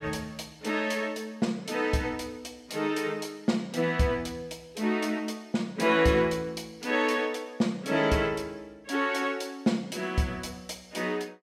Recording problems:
none

